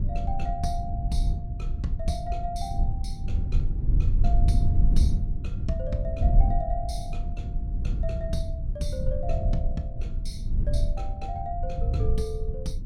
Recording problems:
low-frequency rumble; below 78 Hz, SNR -6 dB

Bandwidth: 16 kHz